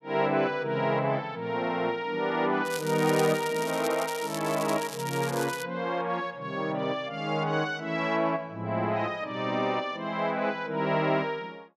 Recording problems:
crackle; from 2.5 to 5.5 s; loose cable, SNR 11 dB

